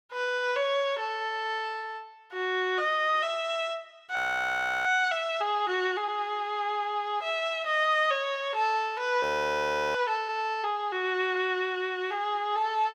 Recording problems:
frozen audio; at 4 s for 0.5 s and at 9 s for 0.5 s

